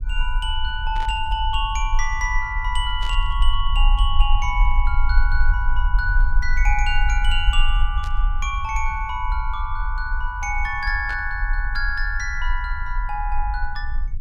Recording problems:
low-frequency rumble; below 44 Hz, strongest tone 20 Hz, SNR 0 dB
burst of static; 4 times, first at 1 s; peak -9 dB vs average level

